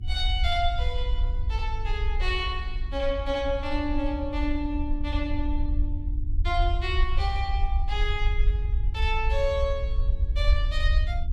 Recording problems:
electrical hum; 50 Hz, harmonics up to 350 Hz, SNR 15 dB
rumble; below 62 Hz, SNR -1 dB

